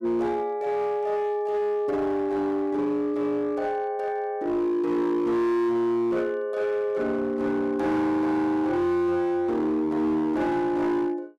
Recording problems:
distorted audio; hard clipping, signal-to-distortion ratio 11 dB

